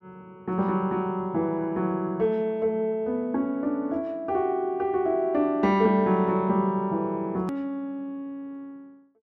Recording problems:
edit click; at 7.5 s

